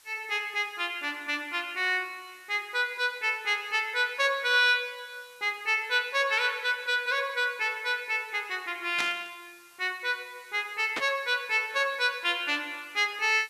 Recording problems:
background hiss; slope +2 dB per octave, SNR 27 dB
static burst; at 9 s and at 11 s; peak 0 dB vs average level

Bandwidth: 14 kHz